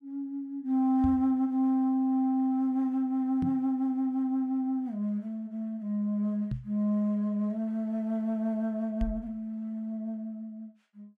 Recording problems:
knock on the microphone; 4 times, first at 1 s; peak -1 dB vs average level

